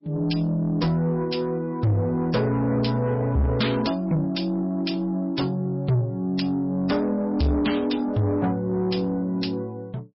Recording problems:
lossy compression; MP3, log-spectral distance 2 dB, nothing above 5.5 kHz
distorted audio; soft clipping, signal-to-distortion ratio 7 dB

